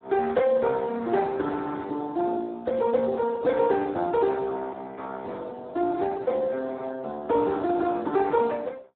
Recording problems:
phone line; 240 Hz to 2.1 kHz, Speex

